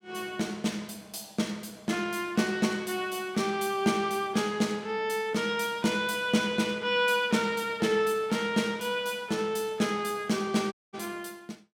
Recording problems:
audio cutting out; at 11 s

